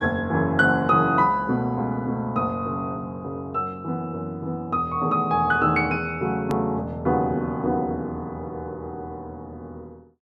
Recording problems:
click at an edit; at 6.5 s

